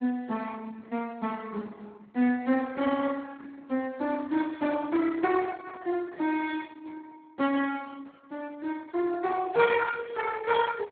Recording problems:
lossy codec; Opus, then Speex, log-spectral distance 4 dB

